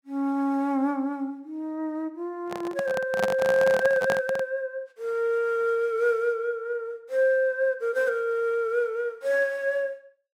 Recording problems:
handling noise; from 2.5 to 4.5 s; peak +2 dB vs average level

